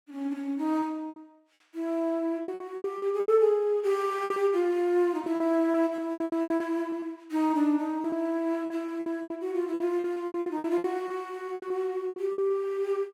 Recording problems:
packet loss; 15% of the sound replaced, filled with repeated pitch periods

